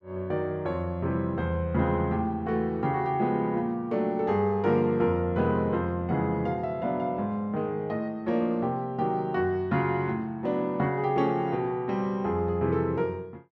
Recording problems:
none

